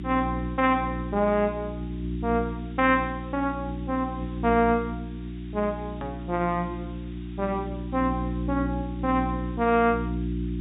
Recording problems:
treble cut off; nothing above 4 kHz
mains hum; 60 Hz, harmonics up to 360 Hz, SNR 6 dB
hiss; SNR 28 dB
hard cut with a click; at 6 s

